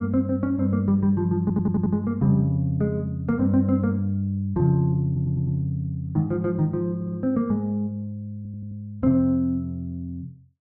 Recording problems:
audio stuttering; 4 times, first at 1.5 s

